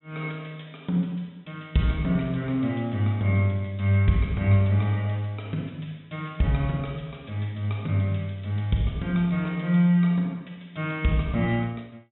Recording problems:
low-pass filter; nothing above 3.7 kHz

